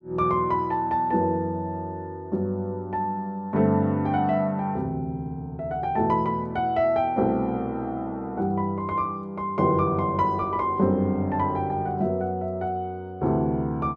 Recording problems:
none

